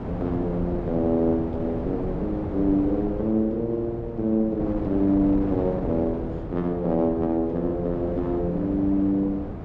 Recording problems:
wind noise; below 450 Hz, SNR 8 dB

